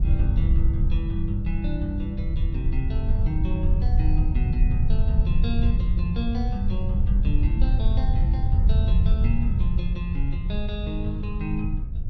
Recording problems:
wind on the microphone; below 80 Hz, SNR -7 dB

